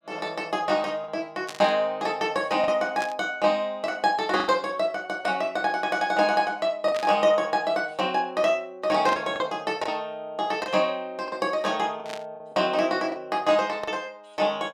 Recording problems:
lost packets; 4% of the sound replaced, filled with the last packet
static burst; 5 times, first at 1.5 s; peak -6 dB vs average level

